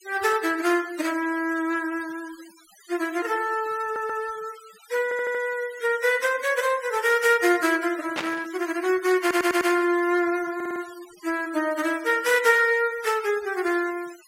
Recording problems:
denoising artefacts; signal-to-artefact ratio 17 dB
audio stuttering; 4 times, first at 4 s
burst of static; at 8 s; peak +1 dB vs average level

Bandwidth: 16 kHz